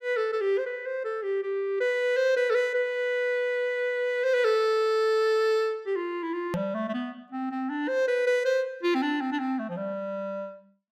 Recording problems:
hard cut with a click; at 6.5 s

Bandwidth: 15.5 kHz